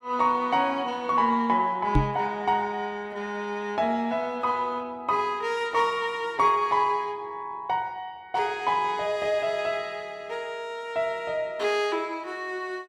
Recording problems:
knock on the microphone; at 2 s; peak +7 dB vs average level

